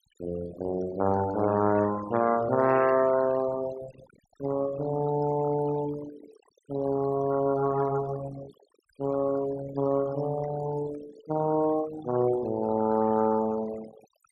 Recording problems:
denoising artefacts; signal-to-artefact ratio 16 dB

